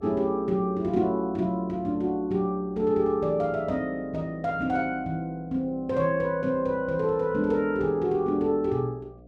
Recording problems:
mains hum; 60 Hz, harmonics up to 720 Hz, SNR 25 dB

